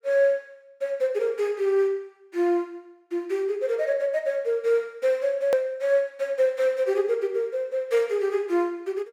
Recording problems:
edit click; at 5.5 s

